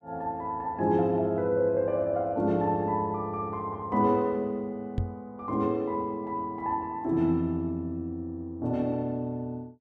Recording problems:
microphone bump; at 5 s; peak +3 dB vs average level

